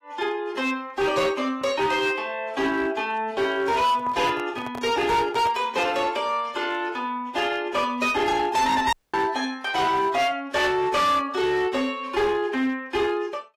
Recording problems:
lossy compression; AAC, log-spectral distance 2 dB, nothing above 15.1 kHz
distorted audio; hard clipping, signal-to-distortion ratio 11 dB
microphone handling noise; from 4 to 5.5 s; peak -8 dB vs average level
audio cutting out; at 9 s

